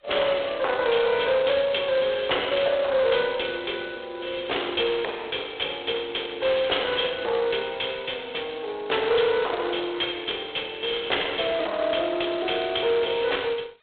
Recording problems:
telephone audio; 370 Hz to 3.5 kHz, G.726
distortion; soft clipping, signal-to-distortion ratio 10 dB

